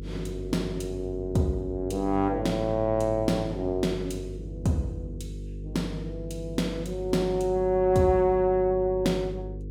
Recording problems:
hum; 50 Hz, harmonics up to 500 Hz, SNR 11 dB

